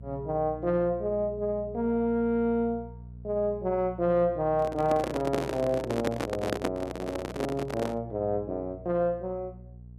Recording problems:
hum; 60 Hz, harmonics up to 420 Hz, SNR 16 dB
handling noise; from 4.5 to 8 s; peak +4 dB vs average level

